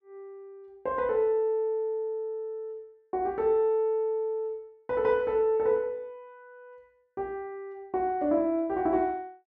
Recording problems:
none

